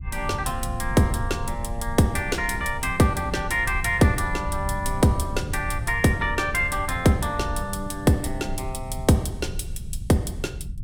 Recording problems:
rumble; below 100 Hz, SNR 9 dB

